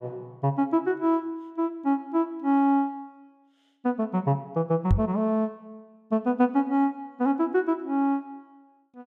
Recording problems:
microphone thump; at 5 s; peak +7 dB vs average level

